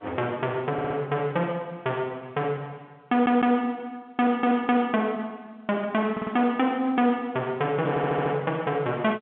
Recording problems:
phone line; 280 Hz to 3.7 kHz, G.711
distorted audio; hard clipping, uneven, signal-to-distortion ratio 12 dB
stutter; 4 times, first at 0.5 s

